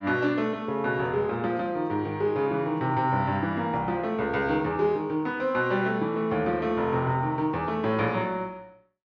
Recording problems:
low-pass filter; nothing above 8 kHz

